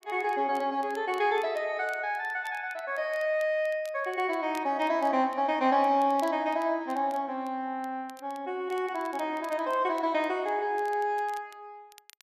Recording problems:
crackle; vinyl, SNR 26 dB

